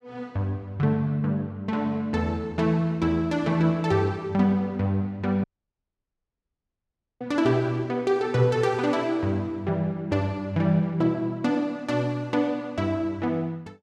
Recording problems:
dropout; at 5.5 s for 2 s

